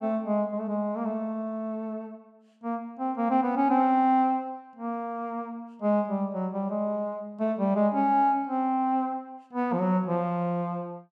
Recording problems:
none

